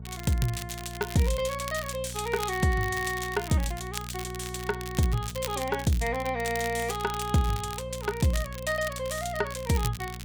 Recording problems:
electrical hum; 60 Hz, harmonics up to 480 Hz, SNR 11 dB
crackle; vinyl, SNR 12 dB

